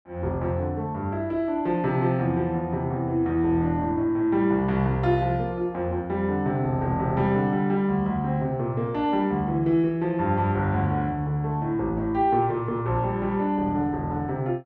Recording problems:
none

